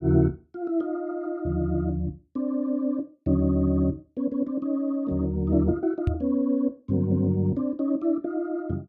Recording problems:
microphone bump; at 6 s; peak +5 dB vs average level

